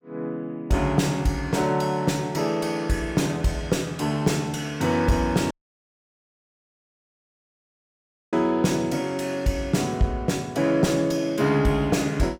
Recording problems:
distortion; soft clipping, signal-to-distortion ratio 11 dB
audio cutting out; at 5.5 s for 3 s

